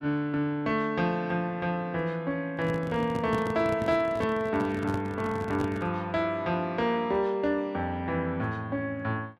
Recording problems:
handling noise; from 2.5 to 6 s; peak 0 dB vs average level

